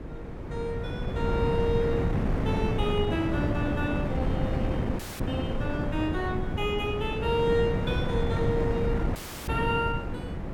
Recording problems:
wind on the microphone; below 310 Hz, SNR -1 dB
dropout; at 5 s and at 9 s

